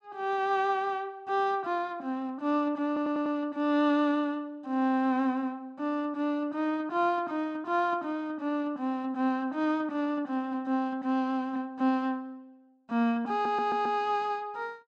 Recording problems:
stutter; at 3 s and at 13 s

